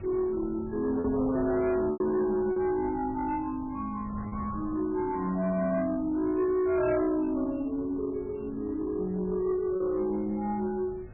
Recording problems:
lossy codec; MP3, log-spectral distance 2 dB, nothing above 2.4 kHz
distortion; soft clipping, signal-to-distortion ratio 11 dB
wind noise; below 250 Hz, SNR 17 dB
packet loss; 2% of the sound replaced, filled with repeated pitch periods

